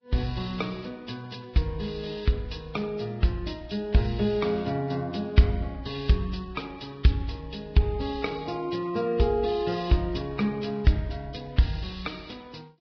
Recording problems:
lossy codec; Vorbis, log-spectral distance 4 dB, nothing above 5.5 kHz

